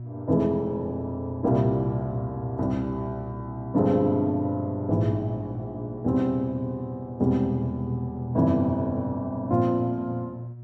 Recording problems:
hum; 60 Hz, harmonics up to 600 Hz, SNR 12 dB

